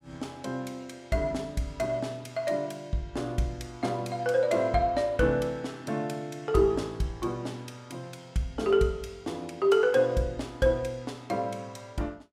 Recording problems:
none

